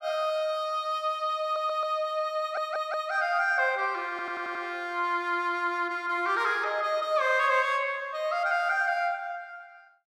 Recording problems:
stutter; at 1.5 s, at 2.5 s and at 4 s

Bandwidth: 14.5 kHz